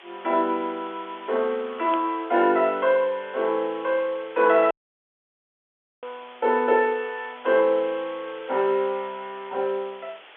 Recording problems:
phone line; 280 Hz to 3.6 kHz, G.711
background hiss; SNR 21 dB
burst of static; at 2 s; peak -8 dB vs average level
audio cutting out; at 4.5 s for 1.5 s

